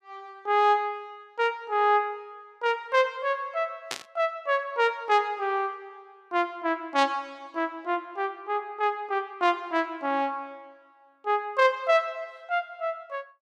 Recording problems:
static burst; at 4 s; peak 0 dB vs average level

